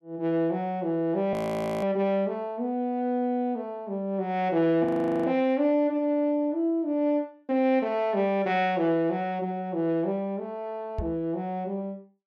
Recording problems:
audio freezing; at 1.5 s and at 5 s
knock on the microphone; at 11 s; peak -1 dB vs average level

